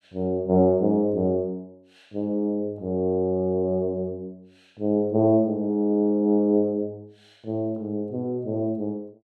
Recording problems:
none

